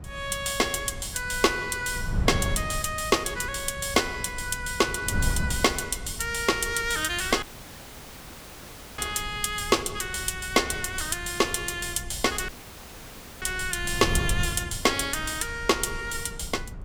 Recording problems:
wind noise; below 140 Hz, SNR 10 dB
dropout; at 7.5 s for 1.5 s and at 12 s for 1 s

